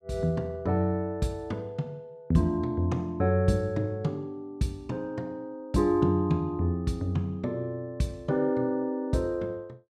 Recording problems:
none

